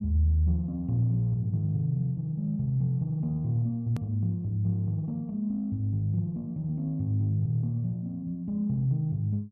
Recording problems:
hard cut with a click; at 4 s

